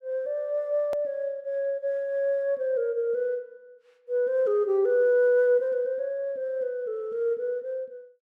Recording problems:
edit click; at 1 s

